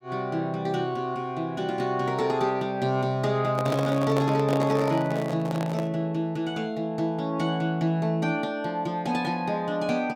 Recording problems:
handling noise; from 3.5 to 6 s; peak +1 dB vs average level

